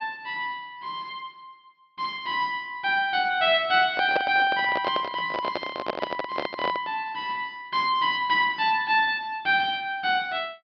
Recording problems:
low-pass filter; nothing above 5.5 kHz
handling noise; from 4 to 7 s; peak +2 dB vs average level

